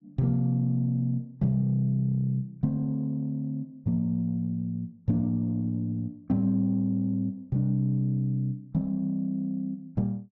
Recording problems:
none

